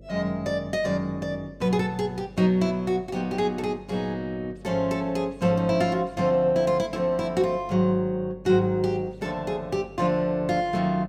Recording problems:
hum; 50 Hz, harmonics up to 600 Hz, SNR 23 dB

